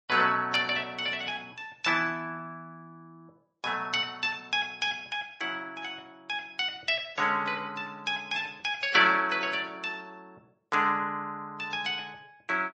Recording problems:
lossy compression; MP3, then AAC, log-spectral distance 2 dB, nothing above 13.1 kHz

